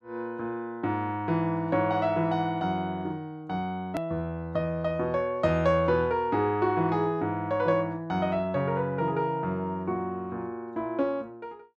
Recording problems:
hard cut with a click; at 4 s

